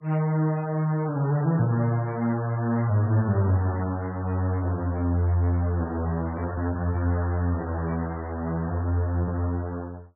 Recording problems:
lossy compression; MP3, log-spectral distance 2 dB, nothing above 11.3 kHz

